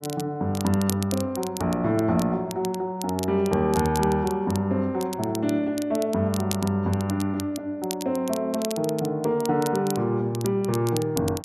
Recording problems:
crackling; vinyl, SNR 13 dB

